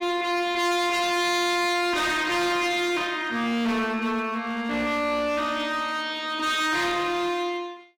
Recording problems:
distortion; hard clipping, uneven, signal-to-distortion ratio 7 dB

